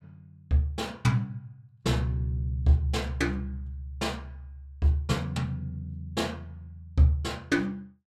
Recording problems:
none

